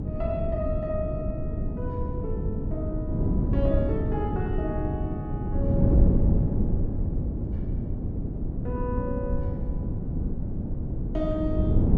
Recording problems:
wind noise; below 180 Hz, SNR -5 dB

